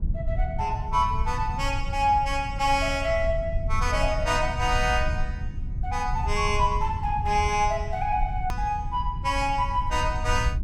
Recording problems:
rumble; below 82 Hz, SNR 5 dB
hard cut with a click; at 8.5 s

